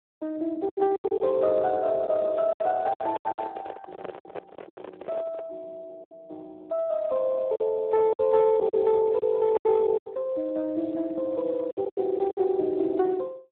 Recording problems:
phone line; 260 Hz to 2.2 kHz, Speex
packet loss; 10% of the sound replaced, filled with silence
handling noise; from 2.5 to 5.5 s; peak -6 dB vs average level

